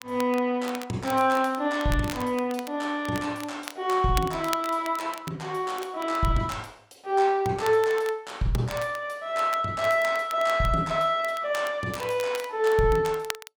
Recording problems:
crackling; vinyl, SNR 17 dB

